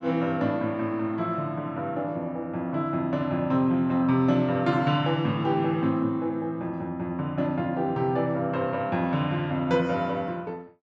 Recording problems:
none

